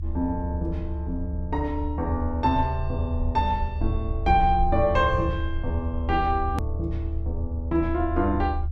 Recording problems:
low-frequency rumble; below 76 Hz, strongest tone 74 Hz, SNR 3 dB
hard cut with a click; at 6.5 s

